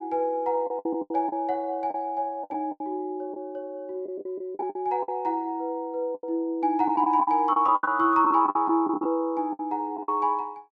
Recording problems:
packet loss; 12% of the sound replaced, filled with the last packet

